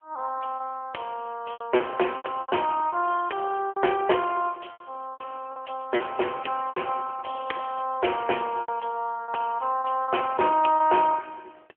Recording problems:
phone line; 280 Hz to 3.2 kHz, AMR-NB
packet loss; 9% of the sound replaced, filled with repeated pitch periods

